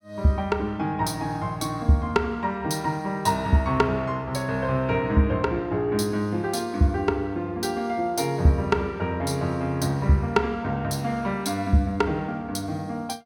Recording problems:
none

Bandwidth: 17 kHz